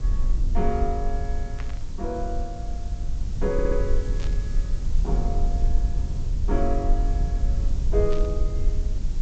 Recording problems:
treble cut off; nothing above 8 kHz
hiss; SNR 16 dB
low-frequency rumble; below 52 Hz, SNR -3 dB
burst of static; at 1.5 s, at 4 s and at 8 s; peak -6 dB vs average level
audio stuttering; at 3.5 s

